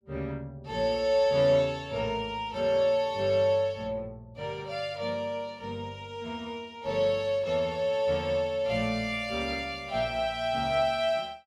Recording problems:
none

